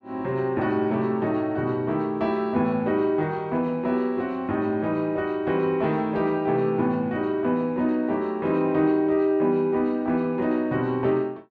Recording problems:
none

